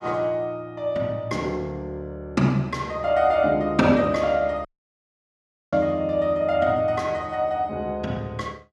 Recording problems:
dropout; at 4.5 s for 1 s

